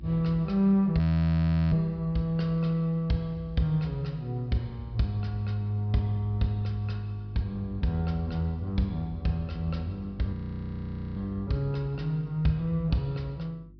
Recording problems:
treble missing; nothing above 5.5 kHz
electrical hum; 50 Hz, harmonics up to 350 Hz, SNR 21 dB
frozen audio; at 1 s for 0.5 s and at 10 s for 1 s

